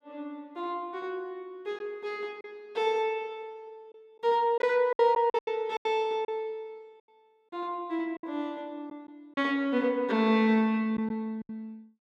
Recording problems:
packet loss; 5% of the sound replaced, filled with silence

